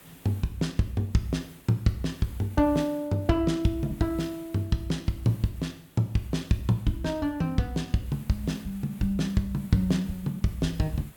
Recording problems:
hiss; SNR 24 dB

